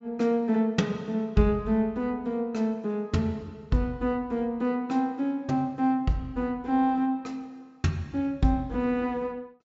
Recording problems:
treble missing; nothing above 8 kHz

